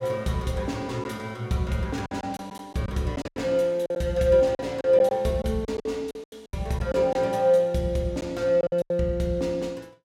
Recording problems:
packet loss; 9% of the sound replaced, filled with silence

